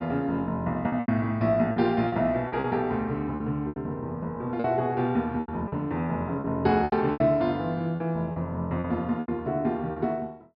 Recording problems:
low-pass filter; nothing above 5.2 kHz
lost packets; 10% of the sound replaced, filled with repeated pitch periods

